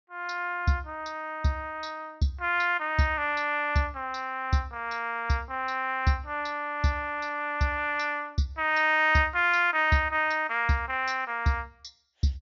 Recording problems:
treble cut off; nothing above 7.1 kHz

